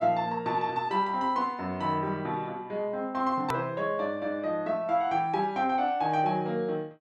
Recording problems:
click at an edit; at 3.5 s

